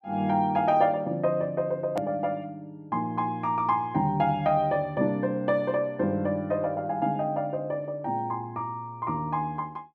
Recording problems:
edit click; at 2 s

